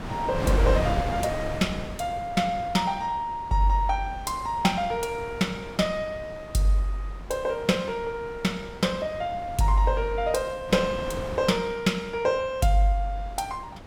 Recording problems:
wind noise; below 820 Hz, SNR 10 dB

